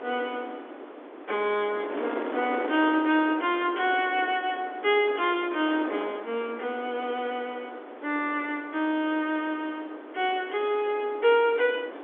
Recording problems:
phone line; 260 Hz to 3.7 kHz, G.711
wind on the microphone; below 890 Hz, SNR 12 dB

